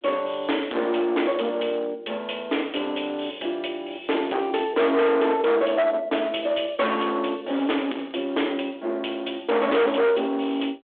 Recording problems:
phone line; 280 Hz to 3.5 kHz, G.726
distorted audio; hard clipping, uneven, signal-to-distortion ratio 5 dB

